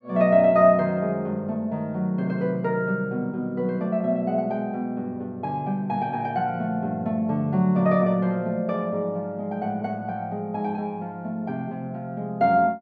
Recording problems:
none

